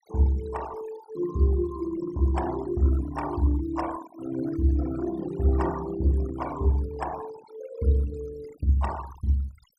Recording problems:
denoising artefacts; signal-to-artefact ratio 16 dB

